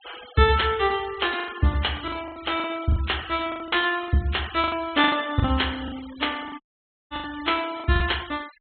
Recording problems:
low-pass filter; nothing above 4.2 kHz
noise reduction artefacts; signal-to-artefact ratio 18 dB
lost packets; 12% of the sound replaced, filled with the last packet
dropout; at 6.5 s for 0.5 s

